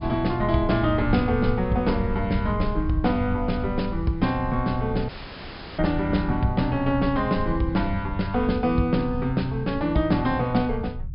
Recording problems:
treble missing; nothing above 5.5 kHz
low-frequency rumble; below 94 Hz, SNR 9 dB
dropout; at 5 s for 0.5 s

